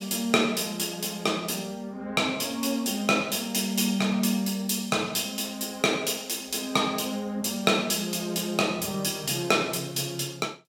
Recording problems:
none

